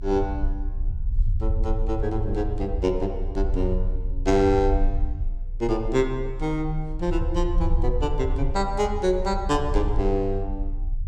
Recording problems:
rumble; below 58 Hz, strongest tone 30 Hz, SNR 3 dB

